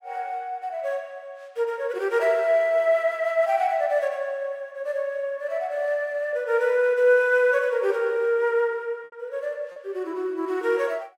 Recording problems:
packet loss; 1.1% of the sound replaced, filled with repeated pitch periods

